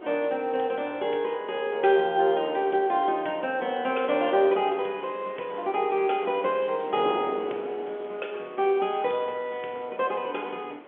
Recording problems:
telephone audio; 320 Hz to 3.4 kHz, G.711
hiss; SNR 24 dB
wind on the microphone; below 670 Hz, SNR 17 dB

